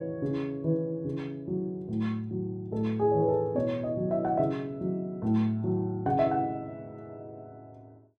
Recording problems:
none

